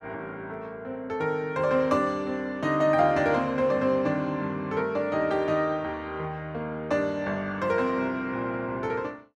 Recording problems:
none

